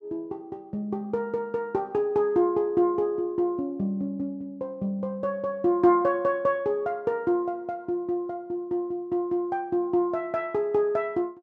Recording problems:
none

